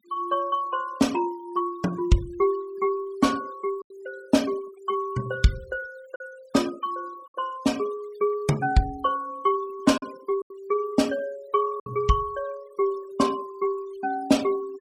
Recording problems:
noise reduction artefacts; signal-to-artefact ratio 20 dB
lost packets; 2% of the sound replaced, filled with silence

